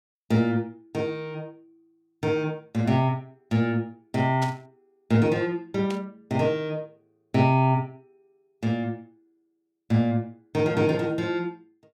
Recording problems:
burst of static; at 4.5 s and at 6 s; peak -6 dB vs average level

